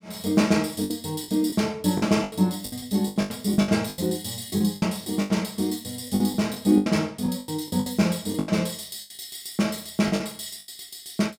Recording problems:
packet loss; 14% of the sound replaced, filled with the last packet

